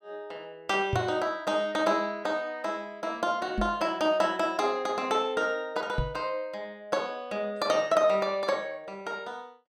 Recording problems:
microphone bump; at 1 s, at 3.5 s and at 6 s; peak +2 dB vs average level

